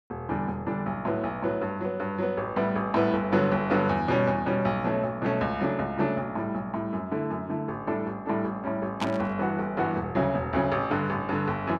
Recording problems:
burst of static; at 9 s; peak -2 dB vs average level

